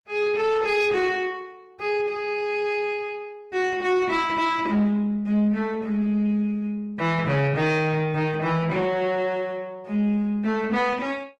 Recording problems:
lossy codec; Opus, log-spectral distance 2 dB
distortion; soft clipping, signal-to-distortion ratio 12 dB

